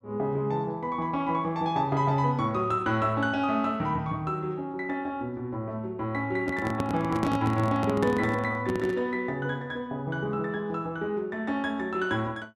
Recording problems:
microphone handling noise; from 6.5 to 9 s; peak +2 dB vs average level

